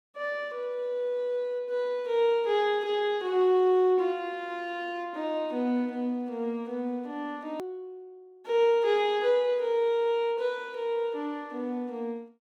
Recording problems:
edit click; at 7.5 s

